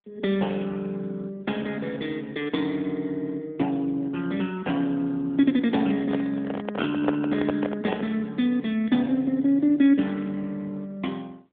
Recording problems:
telephone audio; 220 Hz to 3.6 kHz, AMR-NB
microphone handling noise; from 6 to 8 s; peak +3 dB vs average level

